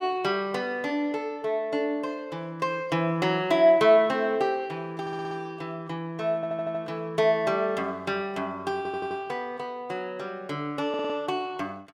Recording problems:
audio stuttering; 4 times, first at 5 s

